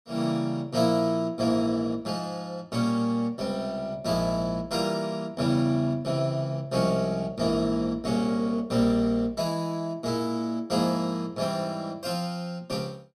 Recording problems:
none

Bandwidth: 14.5 kHz